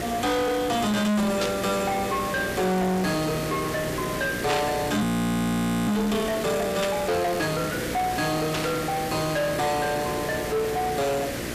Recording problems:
distorted audio; soft clipping, signal-to-distortion ratio 7 dB
electrical hum; 60 Hz, harmonics up to 1.6 kHz, SNR 11 dB
hiss; SNR 7 dB
burst of static; 4 times, first at 1.5 s; peak +1 dB vs average level
audio freezing; at 5 s for 1 s

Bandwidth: 14.5 kHz